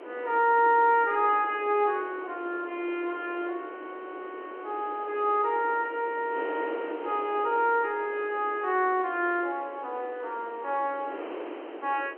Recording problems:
phone line; 300 Hz to 3.3 kHz, G.711
wind on the microphone; below 770 Hz, SNR 14 dB

